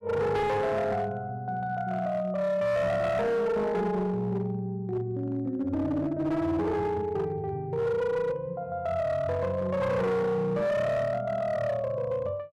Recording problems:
distorted audio; hard clipping, signal-to-distortion ratio 10 dB

